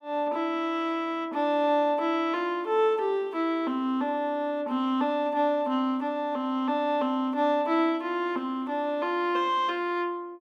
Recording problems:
none

